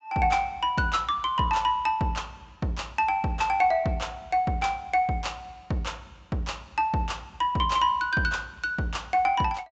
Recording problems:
low-pass filter; nothing above 8 kHz

